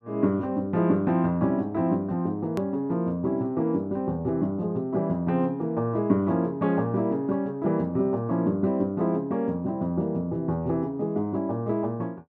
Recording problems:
hard cut with a click; at 2.5 s

